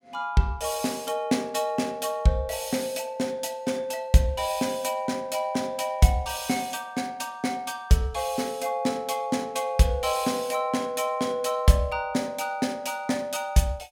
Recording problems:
none

